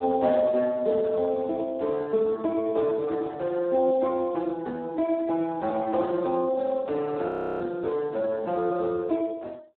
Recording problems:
phone line; 240 Hz to 2.1 kHz, Speex
frozen audio; at 7.5 s

